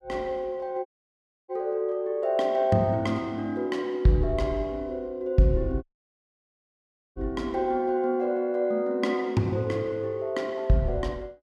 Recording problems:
audio cutting out; at 1 s for 0.5 s and at 6 s for 1.5 s

